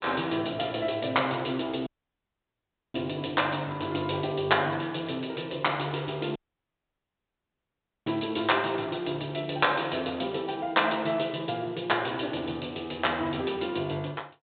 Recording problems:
low-pass filter; nothing above 4 kHz
audio cutting out; at 2 s for 1 s and at 6.5 s for 1.5 s

